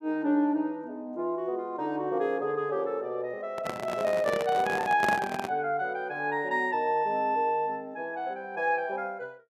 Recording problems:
handling noise; from 3.5 to 5.5 s; peak +3 dB vs average level

